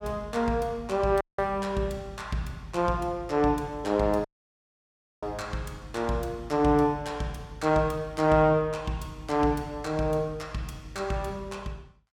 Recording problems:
dropout; at 1 s and at 4.5 s for 1 s

